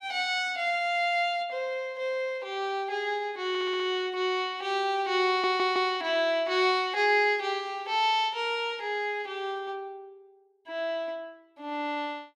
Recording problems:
audio stuttering; at 3.5 s and at 5.5 s

